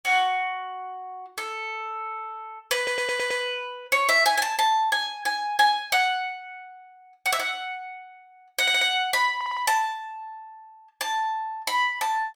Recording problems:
audio stuttering; at 3 s, at 8.5 s and at 9.5 s

